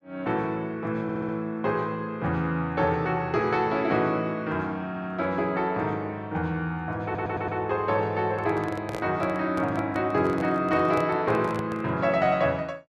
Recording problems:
stutter; at 1 s, at 5 s and at 7 s
handling noise; from 8.5 to 12 s; peak -3 dB vs average level

